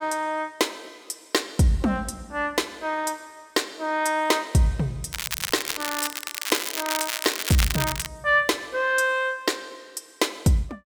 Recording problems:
crackling; from 5 to 8 s; loose cable, SNR 3 dB

